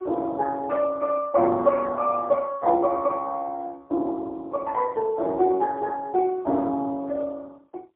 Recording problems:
telephone audio; 260 Hz to 2.2 kHz, AMR-NB, then MP3

